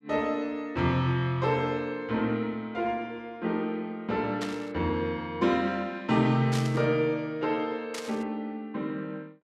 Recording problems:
burst of static; at 4.5 s, at 6.5 s and at 8 s; peak -3 dB vs average level

